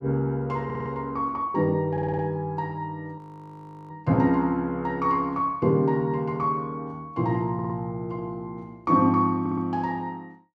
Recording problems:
audio stuttering; 4 times, first at 0.5 s
audio freezing; at 3 s for 0.5 s

